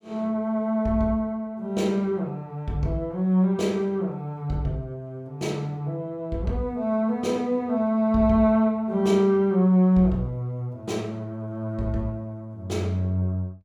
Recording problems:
none

